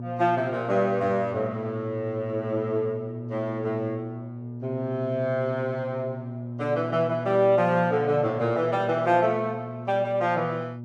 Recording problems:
hum; 60 Hz, harmonics up to 600 Hz, SNR 10 dB

